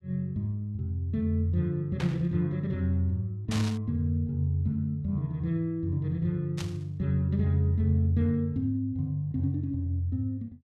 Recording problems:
static burst; at 2 s, at 3.5 s and at 6.5 s; peak -4 dB vs average level

